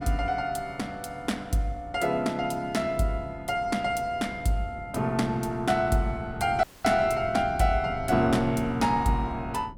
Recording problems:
wind on the microphone; below 200 Hz, SNR 15 dB
dropout; at 6.5 s

